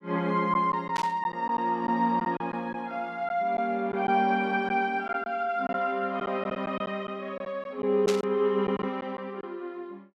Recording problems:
packet loss; 5% of the sound replaced, filled with silence
static burst; at 1 s and at 8 s; peak 0 dB vs average level

